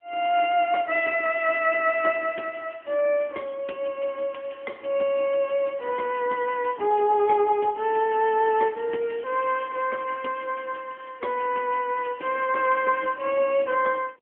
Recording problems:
phone line; 240 Hz to 3.3 kHz, AMR-NB

